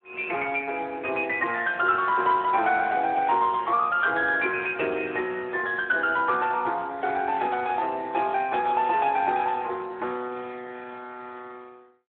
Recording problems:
phone line; 320 Hz to 3.6 kHz, Speex

